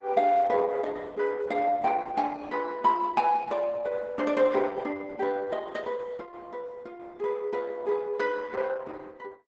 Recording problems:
lossy compression; Opus, log-spectral distance 3 dB, nothing above 8 kHz

